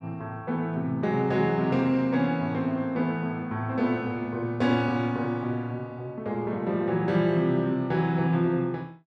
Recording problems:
none

